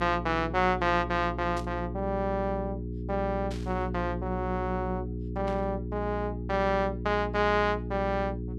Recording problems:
hum; 60 Hz, harmonics up to 420 Hz, SNR 6 dB
static burst; at 1.5 s, at 3.5 s and at 5.5 s; peak -10 dB vs average level

